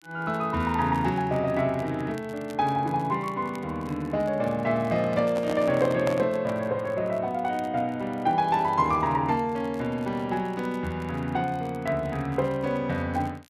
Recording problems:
crackle; vinyl, SNR 28 dB
microphone handling noise; from 5 to 6.5 s; peak -1 dB vs average level

